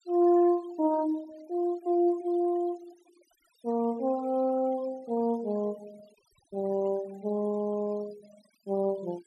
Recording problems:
noise reduction artefacts; signal-to-artefact ratio 24 dB

